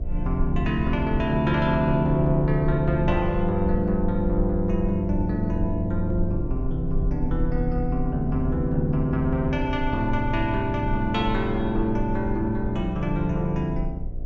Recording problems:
treble cut off; nothing above 8 kHz
hum; 60 Hz, harmonics up to 720 Hz, SNR 15 dB
low-frequency rumble; below 56 Hz, SNR 8 dB

